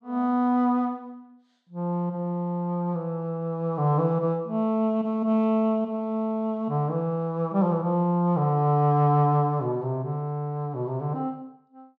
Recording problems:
none

